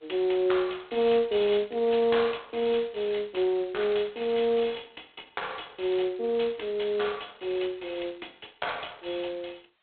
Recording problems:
phone line; 280 Hz to 3.8 kHz, G.726

